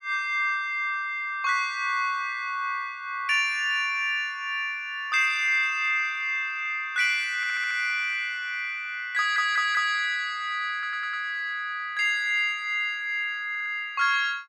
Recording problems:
audio stuttering; 4 times, first at 7.5 s

